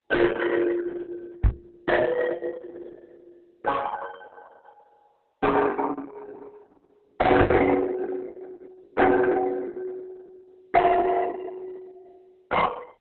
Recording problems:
lossy compression; Opus, then Opus, log-spectral distance 3 dB, nothing above 3.9 kHz
distortion; soft clipping, signal-to-distortion ratio 7 dB
packet loss; 11% of the sound replaced, filled with the last packet
knock on the microphone; at 1.5 s and at 7.5 s; peak +6 dB vs average level

